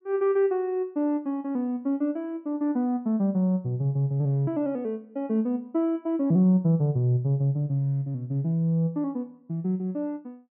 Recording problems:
treble cut off; nothing above 3.1 kHz

